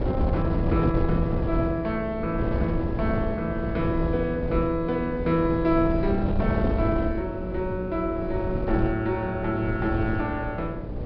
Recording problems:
treble cut off; nothing above 5.5 kHz
hum; 60 Hz, harmonics up to 600 Hz, SNR 12 dB
wind on the microphone; below 260 Hz, SNR 3 dB

